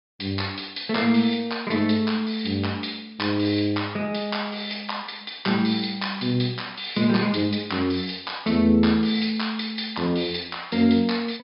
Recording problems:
treble missing; nothing above 5.5 kHz

